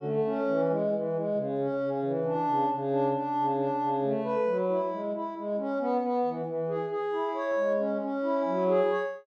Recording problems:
none

